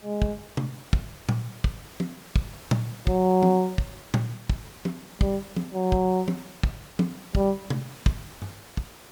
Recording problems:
background hiss; slope -3 dB per octave, SNR 19 dB

